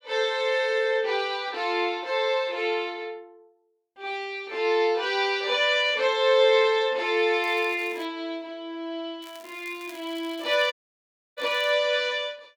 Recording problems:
crackle; at 7.5 s and from 9 to 12 s; loose cable, SNR 25 dB
dropout; at 11 s for 0.5 s

